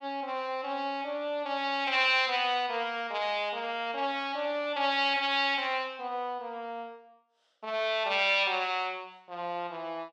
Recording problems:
none

